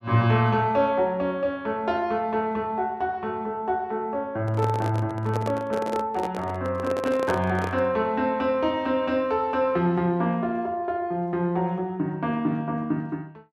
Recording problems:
microphone handling noise; from 4.5 to 8 s; peak +1 dB vs average level

